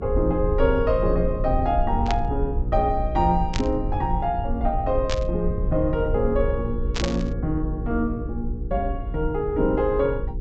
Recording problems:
treble missing; nothing above 8 kHz
electrical hum; 60 Hz, harmonics up to 480 Hz, SNR 9 dB
low-frequency rumble; below 72 Hz, SNR 5 dB
static burst; 4 times, first at 2 s; peak 0 dB vs average level

